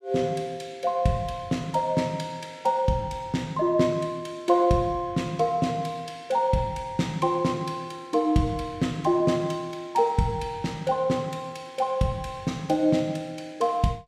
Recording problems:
none

